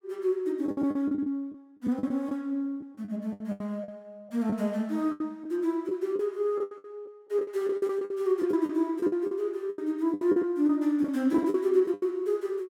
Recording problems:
lost packets; 14% of the sound replaced, filled with the last packet

